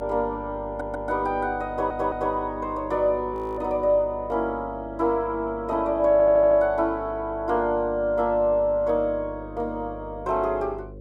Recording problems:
hum; 50 Hz, harmonics up to 550 Hz, SNR 17 dB
stutter; at 0.5 s, at 1.5 s and at 6 s
audio freezing; at 3.5 s

